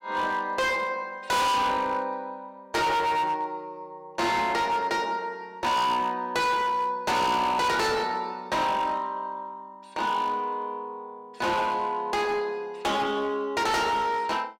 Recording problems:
distortion; hard clipping, signal-to-distortion ratio 6 dB

